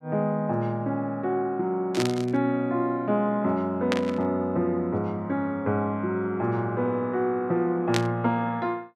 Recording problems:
burst of static; at 2 s, at 4 s and at 8 s; peak +3 dB vs average level

